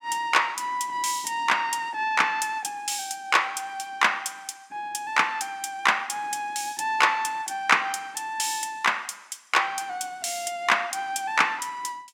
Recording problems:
none

